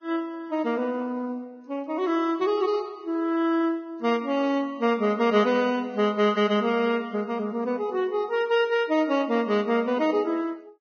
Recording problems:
codec artefacts; Vorbis, log-spectral distance 2 dB, nothing above 6.2 kHz

